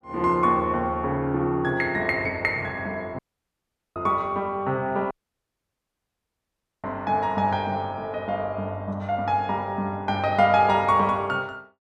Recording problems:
audio cutting out; at 3 s for 1 s and at 5 s for 1.5 s

